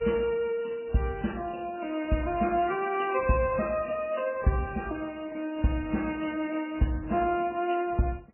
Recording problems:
lossy compression; MP3, then AAC, log-spectral distance 5 dB, nothing above 2.6 kHz

